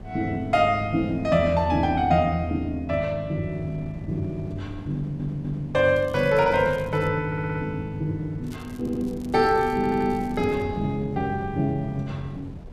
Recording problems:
wind on the microphone; below 250 Hz, SNR 15 dB
audio stuttering; 4 times, first at 5 s
crackling; from 6 to 7 s and from 8.5 to 11 s; loose cable, SNR 28 dB

